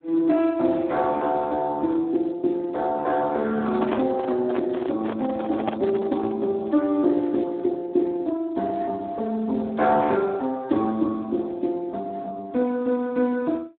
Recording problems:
phone line; 220 Hz to 2.3 kHz, Speex
microphone handling noise; from 3.5 to 6.5 s; peak +2 dB vs average level

